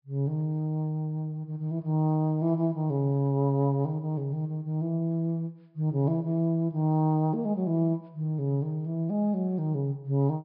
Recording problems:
treble missing; nothing above 5.5 kHz

